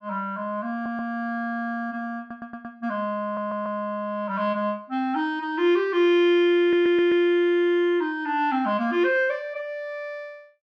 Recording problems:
stutter; 4 times, first at 0.5 s

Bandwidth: 12.5 kHz